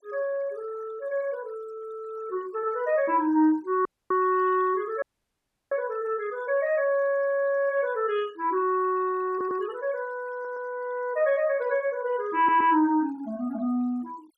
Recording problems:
noise reduction artefacts; signal-to-artefact ratio 27 dB
dropout; at 4 s and at 5 s for 0.5 s
stutter; at 9.5 s, at 10 s and at 12 s

